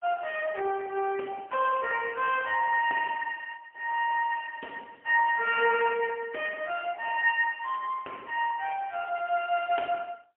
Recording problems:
telephone audio; 300 Hz to 3.1 kHz, AMR-NB, then MP3

